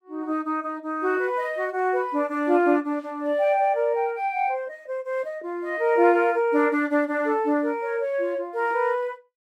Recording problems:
none

